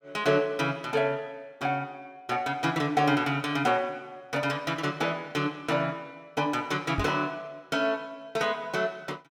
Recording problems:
microphone bump; at 7 s; peak +1 dB vs average level

